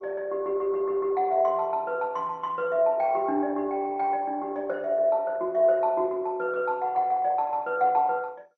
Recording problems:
lossy compression; MP2, log-spectral distance 2 dB, nothing above 5.8 kHz

